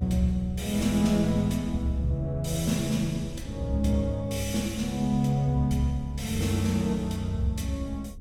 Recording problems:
rumble; below 70 Hz, strongest tone 66 Hz, SNR 13 dB

